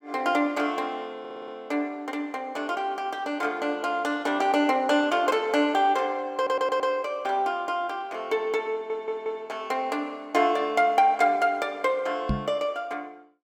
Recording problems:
audio stuttering; at 1 s, at 6.5 s and at 8.5 s
microphone bump; at 12 s; peak +3 dB vs average level

